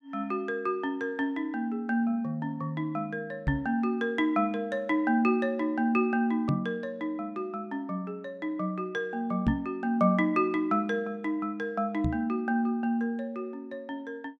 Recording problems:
knock on the microphone; 4 times, first at 3.5 s; peak +6 dB vs average level

